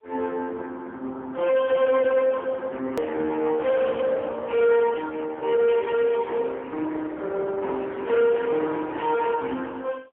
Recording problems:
telephone audio; 190 Hz to 2.8 kHz, AMR-NB, then MP3
distorted audio; soft clipping, signal-to-distortion ratio 11 dB
click at an edit; at 3 s

